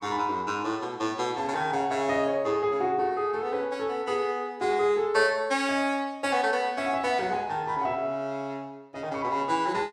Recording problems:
none

